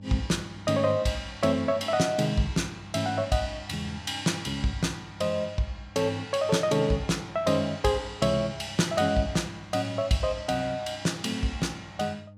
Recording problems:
hum; 50 Hz, harmonics up to 600 Hz, SNR 20 dB

